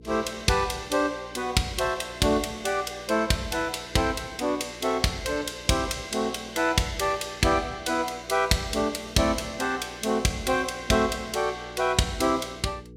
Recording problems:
hum; 60 Hz, harmonics up to 480 Hz, SNR 22 dB

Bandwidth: 16 kHz